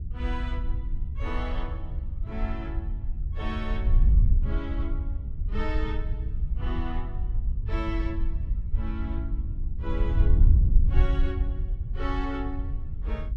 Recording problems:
wind on the microphone; below 68 Hz, SNR -8 dB

